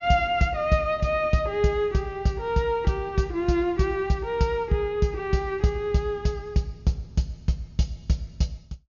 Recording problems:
treble missing; nothing above 7 kHz

